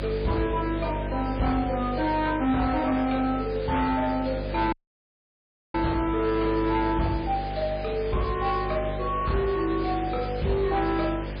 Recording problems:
lossy compression; MP3, log-spectral distance 10 dB, nothing above 4.6 kHz
distortion; soft clipping, signal-to-distortion ratio 11 dB
hum; 50 Hz, harmonics up to 600 Hz, SNR 8 dB
background hiss; SNR 14 dB
dropout; at 4.5 s for 1 s

